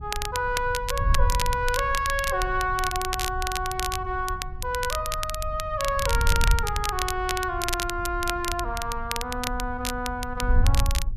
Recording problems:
wind on the microphone; below 70 Hz, SNR 4 dB
crackling; vinyl, SNR 5 dB

